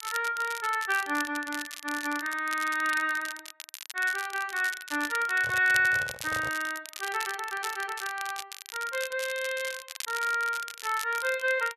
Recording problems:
crackling; vinyl, SNR 11 dB
microphone handling noise; from 5.5 to 6.5 s; peak -8 dB vs average level

